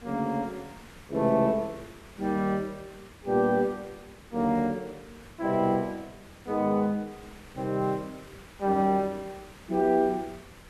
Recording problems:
background hiss; slope -4 dB per octave, SNR 21 dB

